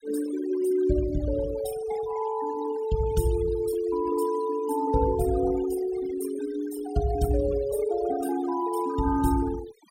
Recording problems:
noise reduction artefacts; signal-to-artefact ratio 14 dB

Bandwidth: 16 kHz